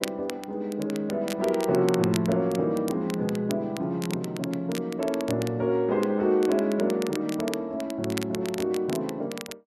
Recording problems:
crackling; vinyl, SNR 14 dB

